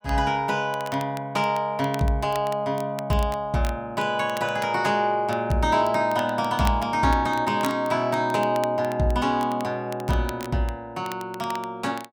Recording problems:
crackle; vinyl, SNR 19 dB

